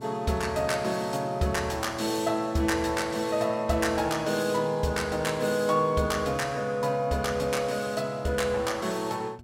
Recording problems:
electrical hum; 60 Hz, harmonics up to 720 Hz, SNR 20 dB

